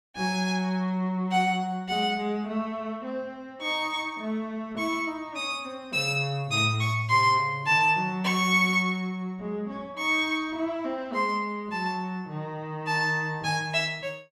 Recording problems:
none

